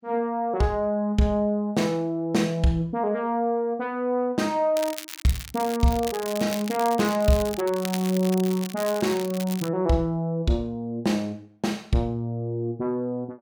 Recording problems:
crackle; from 5 to 7.5 s and from 7.5 to 9.5 s; loose cable, SNR 12 dB

